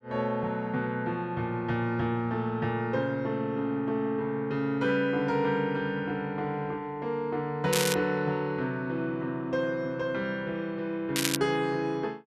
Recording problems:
crackling; at 7.5 s and at 11 s; loose cable, SNR 2 dB

